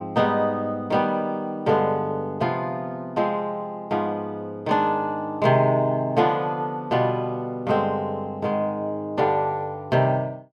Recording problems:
none

